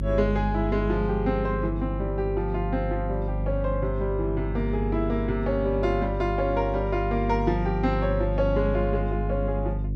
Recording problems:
hum; 50 Hz, harmonics up to 350 Hz, SNR 3 dB

